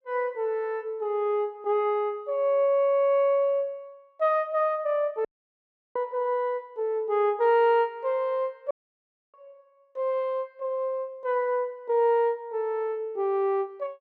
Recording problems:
audio cutting out; at 5.5 s for 0.5 s and at 8.5 s for 0.5 s

